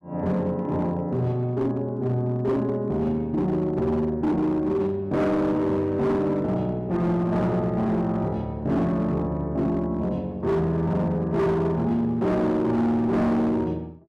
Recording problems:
distorted audio; hard clipping, signal-to-distortion ratio 10 dB

